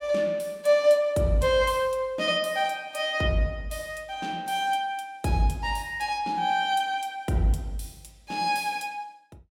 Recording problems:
none

